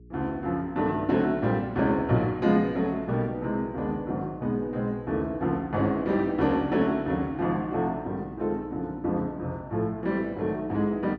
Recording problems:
hum; 60 Hz, harmonics up to 420 Hz, SNR 22 dB

